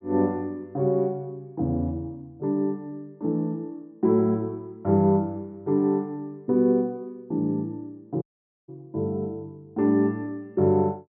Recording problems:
treble cut off; nothing above 4 kHz
dropout; at 8 s

